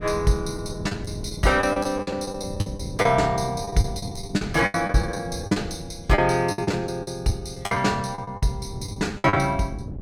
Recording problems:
wind noise; below 190 Hz, SNR 13 dB
packet loss; 15% of the sound replaced, filled with the last packet

